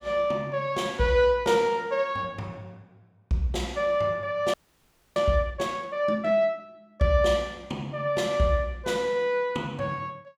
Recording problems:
frozen audio; at 4.5 s for 0.5 s

